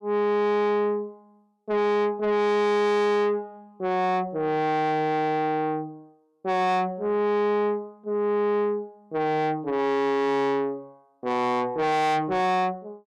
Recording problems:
distorted audio; soft clipping, signal-to-distortion ratio 5 dB

